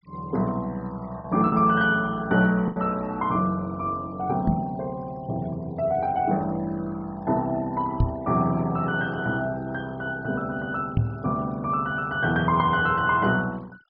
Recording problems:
low-pass filter; nothing above 5.5 kHz
noise reduction artefacts; signal-to-artefact ratio 26 dB
packet loss; 1.2% of the sound replaced, filled with the last packet
microphone thump; at 4.5 s, at 8 s and at 11 s; peak +7 dB vs average level

